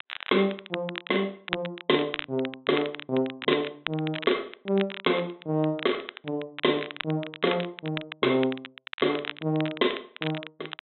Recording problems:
low-pass filter; nothing above 3.9 kHz
crackling; vinyl, SNR 10 dB

